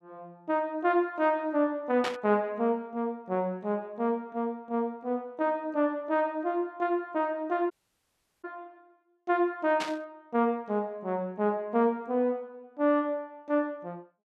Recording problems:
static burst; at 2 s and at 10 s; peak 0 dB vs average level
audio cutting out; at 7.5 s for 0.5 s

